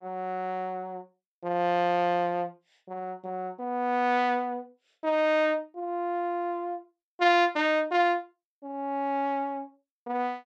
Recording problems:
none

